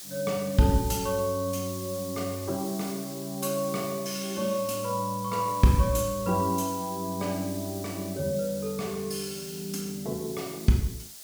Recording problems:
background hiss; SNR 12 dB

